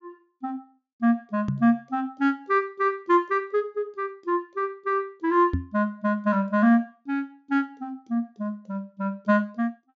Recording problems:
low-pass filter; nothing above 7.3 kHz
knock on the microphone; at 1.5 s and at 5.5 s; peak +3 dB vs average level

